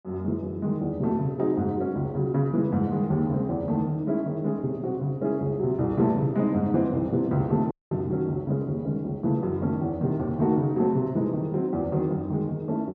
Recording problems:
audio cutting out; at 7.5 s

